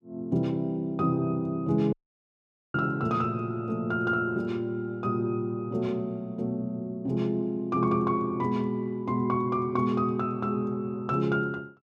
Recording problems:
dropout; at 2 s for 1 s
microphone thump; at 2.5 s; peak -25 dB vs average level

